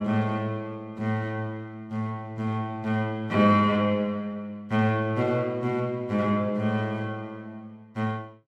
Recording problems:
none

